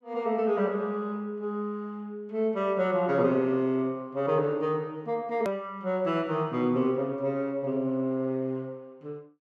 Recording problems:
click at an edit; at 5.5 s

